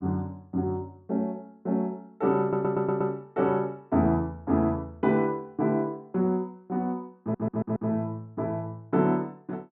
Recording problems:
audio stuttering; at 2.5 s and at 7 s

